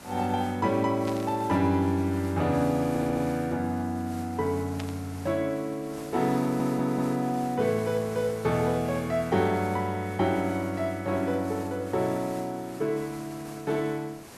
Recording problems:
background hiss; slope -4 dB per octave, SNR 18 dB
burst of static; at 1 s and at 5 s; peak -8 dB vs average level
stutter; at 3 s and at 6.5 s

